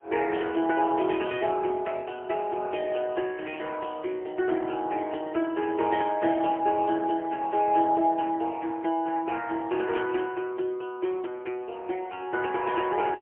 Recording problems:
telephone audio; 300 Hz to 3.3 kHz, AMR-NB, then MP3

